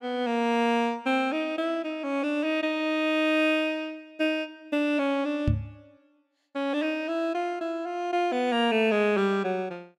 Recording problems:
microphone thump; at 5.5 s; peak +5 dB vs average level

